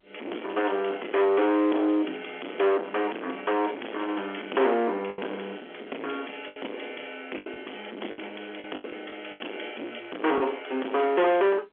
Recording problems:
telephone audio; 240 Hz to 3.4 kHz, G.711
distorted audio; soft clipping, signal-to-distortion ratio 8 dB
packet loss; 5% of the sound replaced, filled with the last packet

